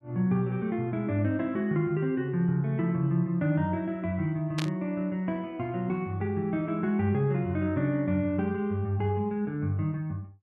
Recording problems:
static burst; at 4.5 s; peak -2 dB vs average level

